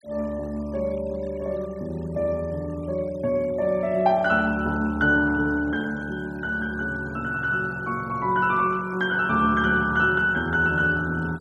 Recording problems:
noise reduction artefacts; signal-to-artefact ratio 26 dB

